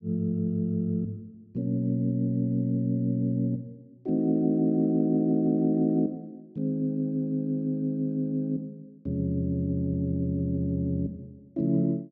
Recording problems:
none

